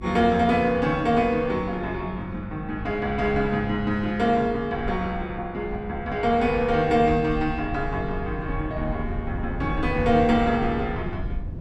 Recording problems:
mains hum; 50 Hz, harmonics up to 350 Hz, SNR 18 dB
low-frequency rumble; below 120 Hz, SNR 12 dB

